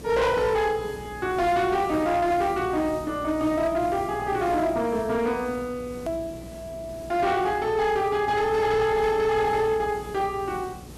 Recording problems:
distortion; hard clipping, uneven, signal-to-distortion ratio 11 dB
hum; 60 Hz, harmonics up to 600 Hz, SNR 20 dB
hiss; SNR 19 dB
click at an edit; at 6 s

